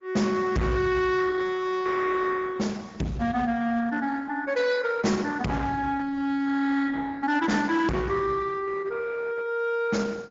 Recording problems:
treble cut off; nothing above 7.3 kHz
codec artefacts; Opus, log-spectral distance 3 dB
distortion; hard clipping, signal-to-distortion ratio 7 dB

